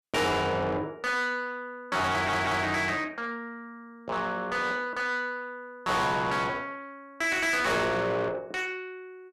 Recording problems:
distorted audio; soft clipping, signal-to-distortion ratio 6 dB
audio stuttering; at 2 s

